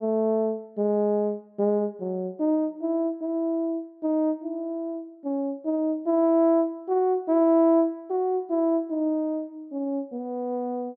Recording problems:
none

